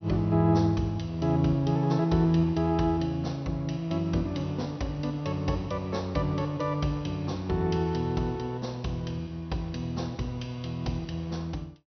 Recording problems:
treble missing; nothing above 6.2 kHz

